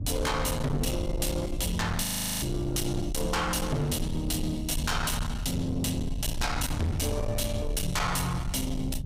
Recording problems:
distorted audio; soft clipping, signal-to-distortion ratio 8 dB
rumble; below 130 Hz, SNR 5 dB
frozen audio; at 2 s

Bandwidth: 15.5 kHz